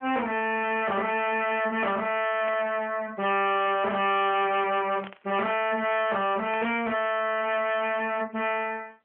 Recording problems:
telephone audio; 260 Hz to 3.5 kHz, AMR-NB
distortion; hard clipping, signal-to-distortion ratio 7 dB
burst of static; at 2.5 s, at 5 s and at 6.5 s; peak -10 dB vs average level

